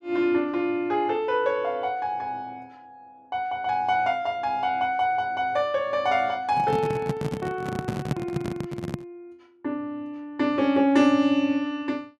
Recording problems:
handling noise; from 6.5 to 9 s; peak +3 dB vs average level

